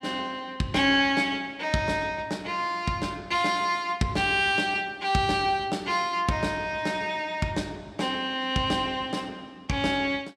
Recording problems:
none

